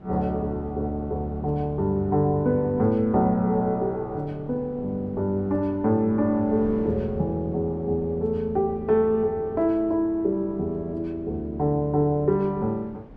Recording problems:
wind on the microphone; below 360 Hz, SNR 20 dB

